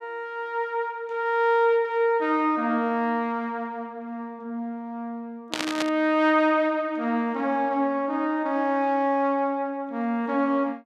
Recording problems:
burst of static; at 5.5 s; peak +1 dB vs average level

